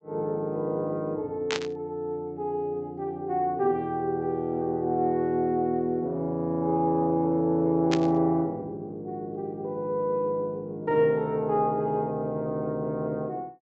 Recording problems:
low-pass filter; nothing above 8 kHz
static burst; at 1.5 s and at 8 s; peak +1 dB vs average level

